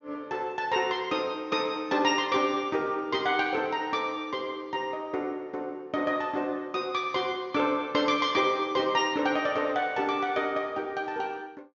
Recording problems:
low-pass filter; nothing above 7 kHz

